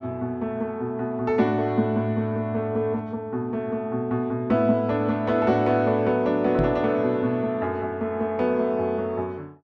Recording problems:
microphone bump; at 6.5 s; peak +2 dB vs average level

